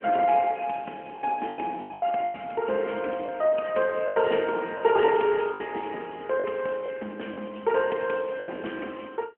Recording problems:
telephone audio; 240 Hz to 3.1 kHz, AMR-NB
packet loss; 8% of the sound replaced, filled with the last packet

